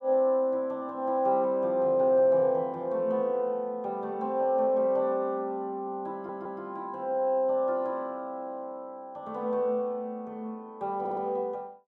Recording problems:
audio stuttering; at 6 s and at 11 s

